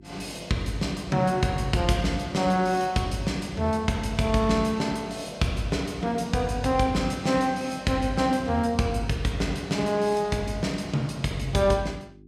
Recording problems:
electrical hum; 50 Hz, harmonics up to 400 Hz, SNR 24 dB

